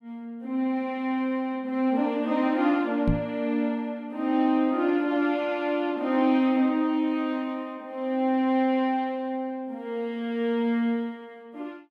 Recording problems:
microphone bump; at 3 s; peak +4 dB vs average level

